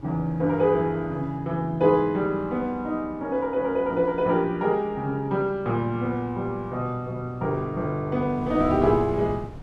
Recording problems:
wind noise; below 250 Hz, SNR 17 dB

